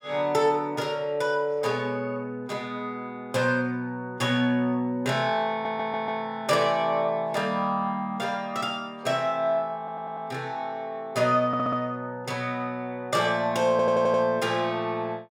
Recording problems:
audio stuttering; 4 times, first at 5.5 s

